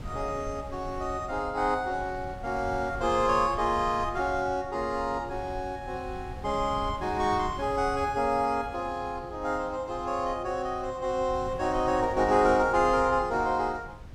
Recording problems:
wind noise; below 150 Hz, SNR 15 dB

